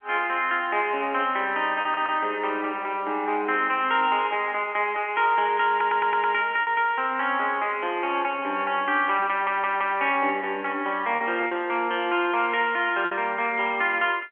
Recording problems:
phone line; 260 Hz to 3.2 kHz, G.711
lost packets; 2% of the sound replaced, filled with repeated pitch periods
audio stuttering; at 2 s, at 5.5 s and at 9.5 s

